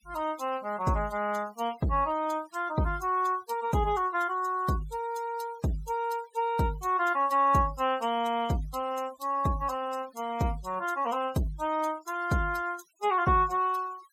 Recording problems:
denoising artefacts; signal-to-artefact ratio 21 dB

